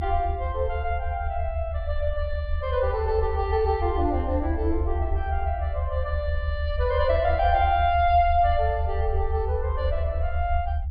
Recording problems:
low-pass filter; nothing above 5.5 kHz
low-frequency rumble; below 78 Hz, SNR 3 dB

